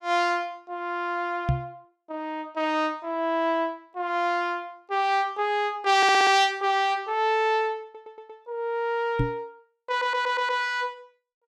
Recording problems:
knock on the microphone; at 1.5 s and at 9 s; peak +4 dB vs average level
stutter; at 6 s, at 8 s and at 10 s

